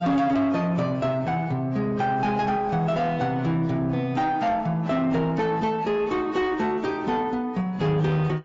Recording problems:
lossy codec; AAC, log-spectral distance 2 dB
distorted audio; soft clipping, signal-to-distortion ratio 10 dB

